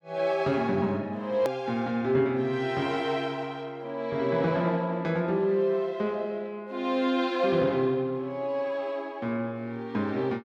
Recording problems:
edit click; at 1.5 s

